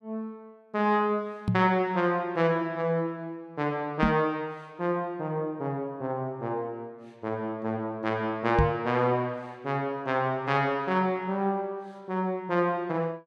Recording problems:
microphone bump; at 1.5 s, at 4 s and at 8.5 s; peak +7 dB vs average level

